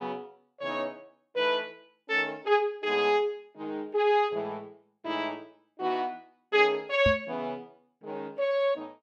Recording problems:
microphone bump; at 7 s; peak +2 dB vs average level

